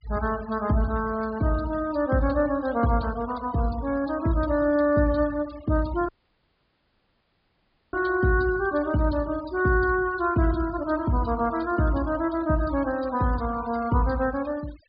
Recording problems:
treble cut off; nothing above 5 kHz
noise reduction artefacts; signal-to-artefact ratio 21 dB
audio cutting out; at 6 s for 2 s

